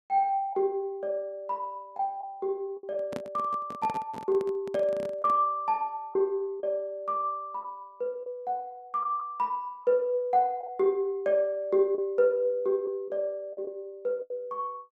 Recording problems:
packet loss; 4% of the sound replaced, filled with the last packet
handling noise; from 3 to 5.5 s; peak -3 dB vs average level

